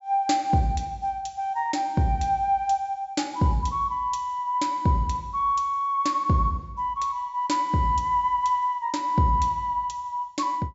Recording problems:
treble cut off; nothing above 8 kHz

